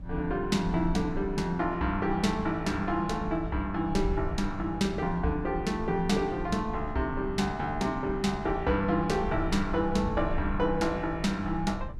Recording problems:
wind on the microphone; below 84 Hz, SNR 11 dB

